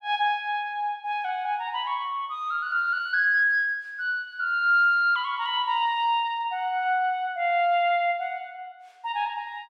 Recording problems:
none

